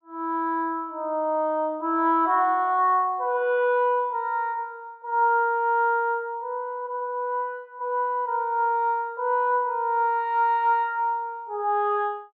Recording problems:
none

